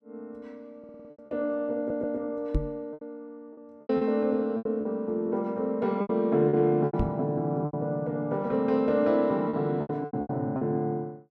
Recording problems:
lost packets; 10% of the sound replaced, filled with repeated pitch periods
stutter; at 1 s and at 2 s
microphone thump; at 2.5 s and at 7 s; peak +4 dB vs average level

